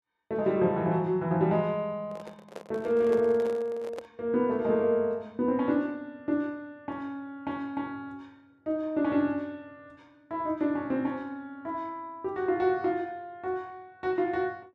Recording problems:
handling noise; from 2 to 4 s; peak -6 dB vs average level

